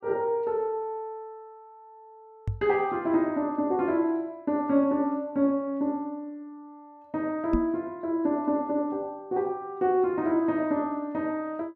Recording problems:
microphone bump; at 2.5 s and at 7.5 s; peak +3 dB vs average level

